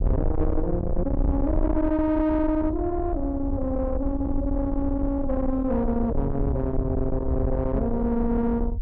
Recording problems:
distortion; soft clipping, signal-to-distortion ratio 7 dB
low-frequency rumble; below 92 Hz, SNR 4 dB

